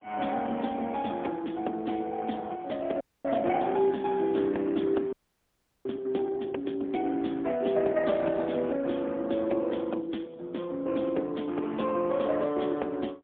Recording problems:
telephone audio; 220 Hz to 3.5 kHz, AMR-NB, then MP3
audio freezing; at 3 s and at 5 s for 0.5 s

